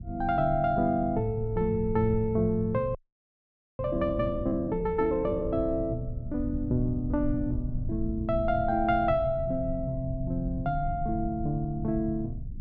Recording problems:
treble cut off; nothing above 8 kHz
low-frequency rumble; below 100 Hz, SNR 9 dB
frozen audio; at 3 s for 1 s

